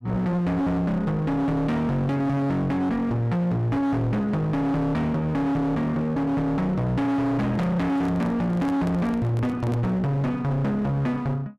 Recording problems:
distortion; hard clipping, uneven, signal-to-distortion ratio 5 dB
handling noise; from 7.5 to 10 s; peak -3 dB vs average level

